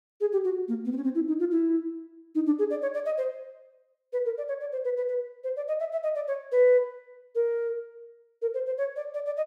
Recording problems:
none

